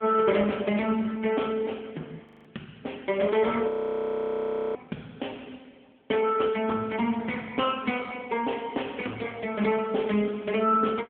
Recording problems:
phone line; 150 Hz to 3.3 kHz, AMR-NB
frozen audio; at 2.5 s and at 3.5 s for 1 s

